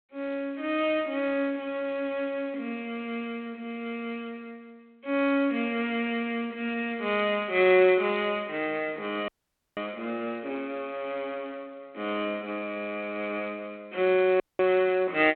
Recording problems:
phone line; 280 Hz to 3.5 kHz, G.726
dropout; at 9.5 s and at 14 s

